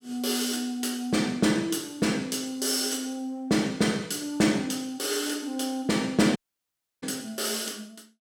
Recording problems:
dropout; at 6.5 s for 0.5 s

